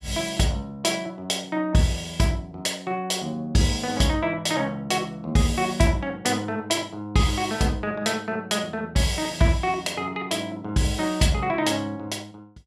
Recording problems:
none

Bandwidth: 14.5 kHz